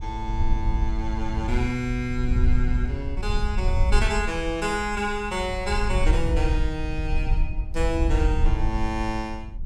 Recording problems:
wind noise; below 64 Hz, SNR -1 dB

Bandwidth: 16.5 kHz